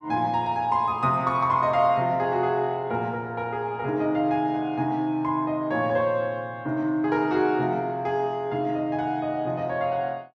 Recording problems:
none

